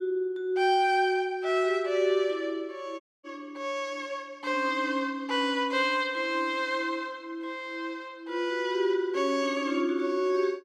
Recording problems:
dropout; at 3 s

